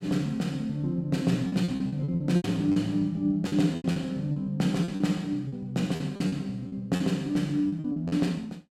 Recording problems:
lost packets; 12% of the sound replaced, filled with repeated pitch periods

